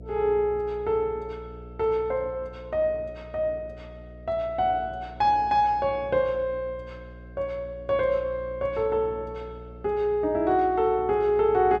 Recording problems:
hum; 60 Hz, harmonics up to 720 Hz, SNR 19 dB

